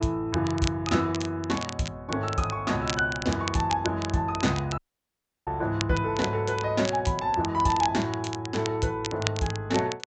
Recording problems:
low-pass filter; nothing above 8 kHz
crackling; vinyl, SNR 11 dB
dropout; at 5 s for 0.5 s

